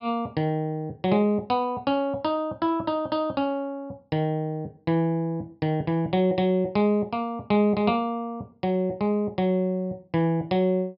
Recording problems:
treble missing; nothing above 5.5 kHz

